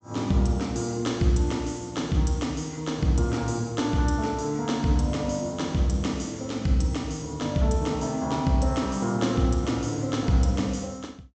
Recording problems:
treble missing; nothing above 8 kHz

